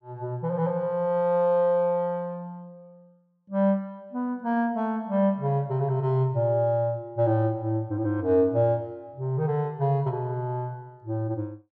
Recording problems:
none

